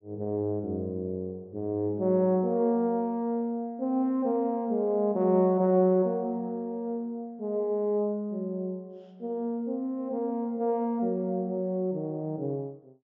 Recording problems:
treble missing; nothing above 8 kHz

